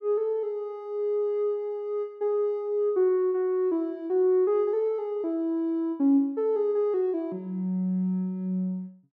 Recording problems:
none

